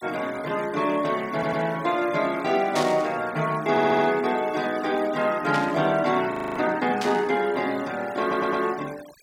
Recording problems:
noise reduction artefacts; signal-to-artefact ratio 19 dB
audio stuttering; at 1.5 s, at 3.5 s and at 8 s
static burst; at 3 s, at 5.5 s and at 7 s; peak -3 dB vs average level
frozen audio; at 6.5 s

